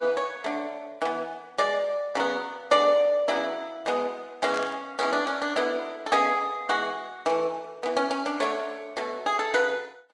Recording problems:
lossy codec; Vorbis, then Vorbis, log-spectral distance 3 dB
static burst; at 4.5 s; peak -8 dB vs average level

